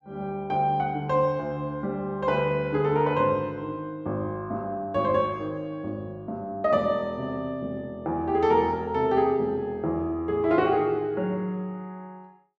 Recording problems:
none

